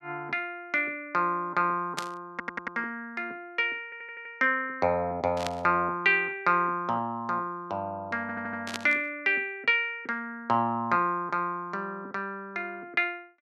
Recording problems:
static burst; at 2 s, at 5.5 s and at 8.5 s; peak 0 dB vs average level
stutter; at 2.5 s, at 4 s and at 8 s

